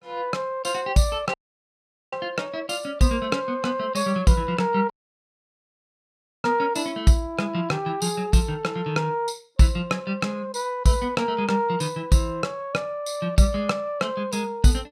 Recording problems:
dropout; at 1.5 s for 1 s and at 5 s for 1.5 s

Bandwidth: 15 kHz